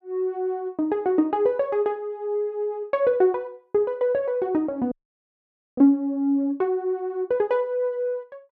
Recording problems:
audio freezing; at 5 s for 1 s

